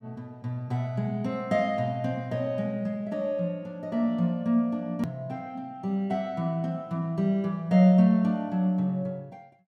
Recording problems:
click at an edit; at 5 s

